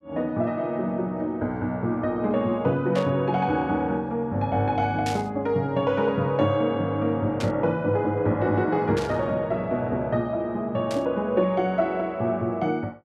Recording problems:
burst of static; 5 times, first at 3 s; peak -5 dB vs average level

